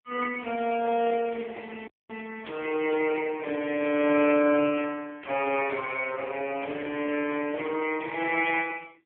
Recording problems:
phone line; 260 Hz to 3.2 kHz, AMR-NB
dropout; at 2 s

